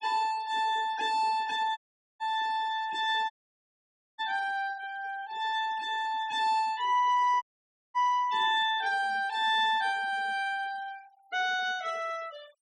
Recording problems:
denoising artefacts; signal-to-artefact ratio 22 dB
dropout; at 2 s, at 3.5 s for 1 s and at 7.5 s for 0.5 s

